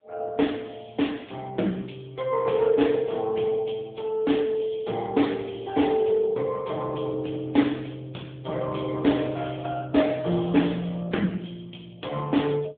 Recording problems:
telephone audio; 190 Hz to 3.6 kHz, AMR-NB

